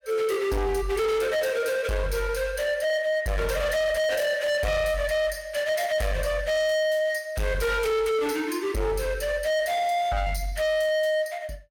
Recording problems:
distorted audio; hard clipping, signal-to-distortion ratio 7 dB

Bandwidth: 17 kHz